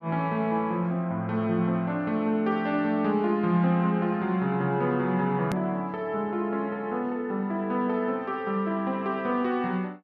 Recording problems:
hard cut with a click; at 5.5 s

